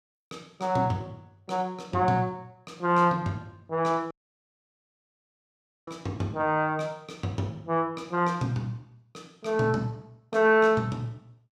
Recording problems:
audio cutting out; at 4 s for 2 s

